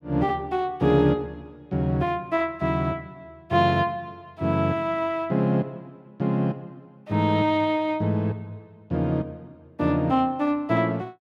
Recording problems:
none

